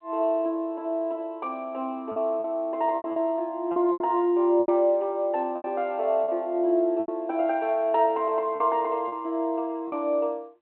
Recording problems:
telephone audio; 280 Hz to 3.7 kHz, G.726
packet loss; 7% of the sound replaced, filled with repeated pitch periods

